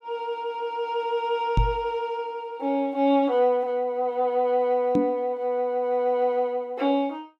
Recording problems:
knock on the microphone; at 1.5 s and at 5 s; peak +5 dB vs average level

